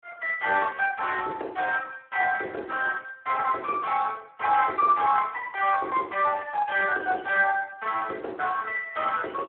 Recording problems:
telephone audio; 320 Hz to 3.1 kHz, Speex

